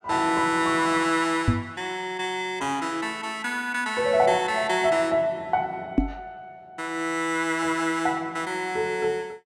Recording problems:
microphone bump; at 1.5 s and at 6 s; peak +8 dB vs average level

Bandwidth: 17.5 kHz